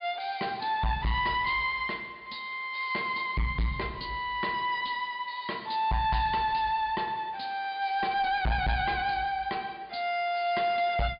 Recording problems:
treble missing; nothing above 4.9 kHz
distorted audio; soft clipping, signal-to-distortion ratio 8 dB

